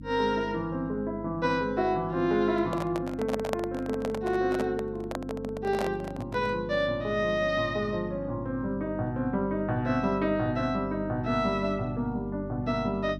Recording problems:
hum; 50 Hz, harmonics up to 300 Hz, SNR 12 dB
handling noise; from 2.5 to 6.5 s; peak +2 dB vs average level

